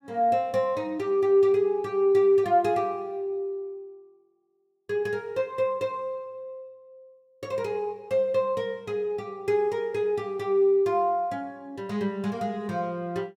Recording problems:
none

